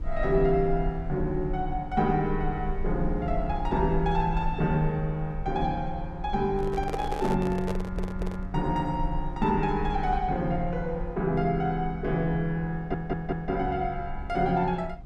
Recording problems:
low-frequency rumble; below 54 Hz, SNR 9 dB
handling noise; from 6.5 to 8.5 s; peak 0 dB vs average level
stutter; at 7.5 s and at 13 s

